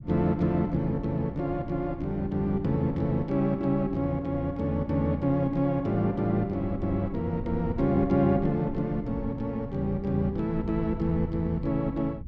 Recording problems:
low-frequency rumble; below 150 Hz, SNR 13 dB

